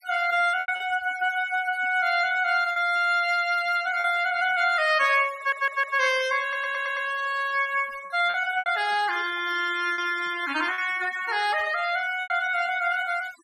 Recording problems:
noise reduction artefacts; signal-to-artefact ratio 17 dB
packet loss; 4% of the sound replaced, filled with repeated pitch periods
audio stuttering; at 5.5 s and at 6.5 s

